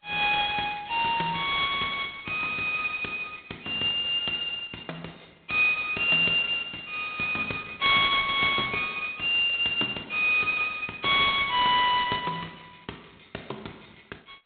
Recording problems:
telephone audio; 260 Hz to 3.7 kHz, G.726

